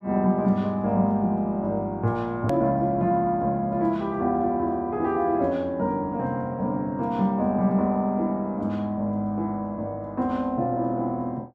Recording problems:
click at an edit; at 2.5 s

